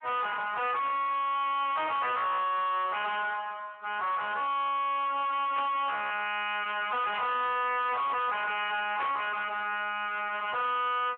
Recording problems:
phone line; 370 Hz to 3.1 kHz, Speex
distorted audio; hard clipping, uneven, signal-to-distortion ratio 4 dB
static burst; at 5.5 s and at 9 s; peak -3 dB vs average level

